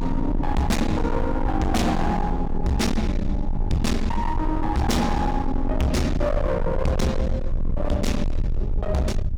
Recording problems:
distorted audio; hard clipping, signal-to-distortion ratio 6 dB
low-frequency rumble; below 84 Hz, strongest tone 20 Hz, SNR 4 dB

